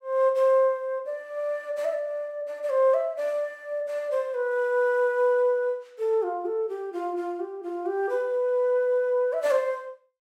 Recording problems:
none

